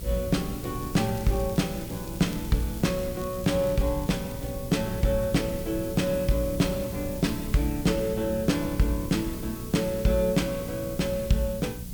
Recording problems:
electrical hum; 60 Hz, harmonics up to 480 Hz, SNR 14 dB
background hiss; slope +6 dB per octave, SNR 14 dB
low-frequency rumble; below 130 Hz, SNR 13 dB
crackling; from 0.5 to 4.5 s; loose cable, SNR 22 dB

